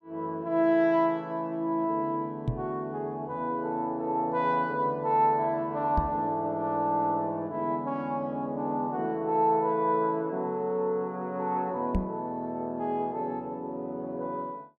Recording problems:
microphone bump; at 2.5 s, at 6 s and at 12 s; peak +4 dB vs average level

